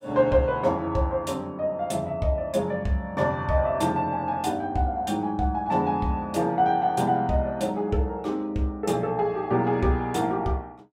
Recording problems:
none

